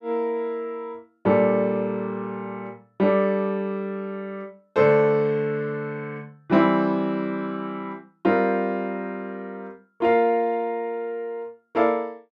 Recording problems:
none

